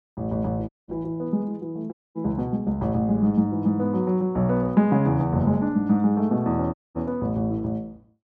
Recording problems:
dropout; at 0.5 s, at 2 s and at 6.5 s

